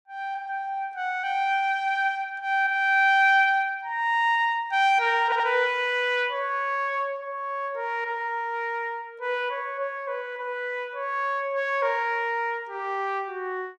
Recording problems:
audio stuttering; at 5 s

